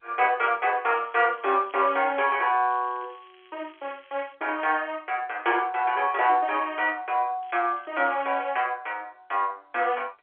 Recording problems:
phone line; 320 Hz to 3.3 kHz, G.711
crackle; from 1 to 4.5 s and at 7.5 s; loose cable, SNR 30 dB

